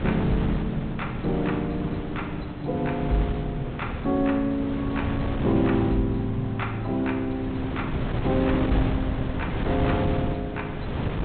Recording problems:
treble missing; nothing above 4 kHz
wind noise; below 370 Hz, SNR 3 dB

